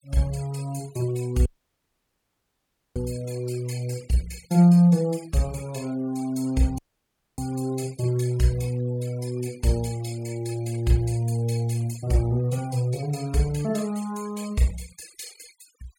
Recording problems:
denoising artefacts; signal-to-artefact ratio 21 dB
audio cutting out; at 1.5 s for 1.5 s and at 7 s for 0.5 s

